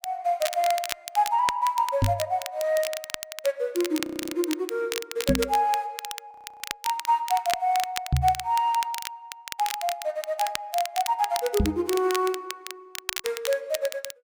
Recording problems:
crackling; vinyl, SNR 8 dB
microphone thump; 4 times, first at 2 s; peak +7 dB vs average level
audio freezing; at 4 s and at 6.5 s

